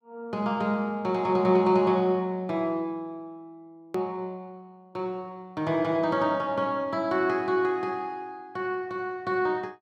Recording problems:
hard cut with a click; at 4 s

